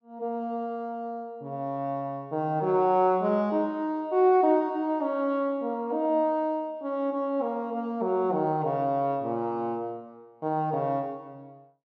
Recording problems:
none

